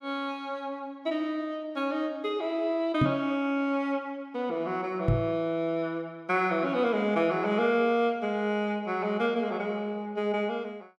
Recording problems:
microphone bump; at 3 s and at 5 s; peak +7 dB vs average level

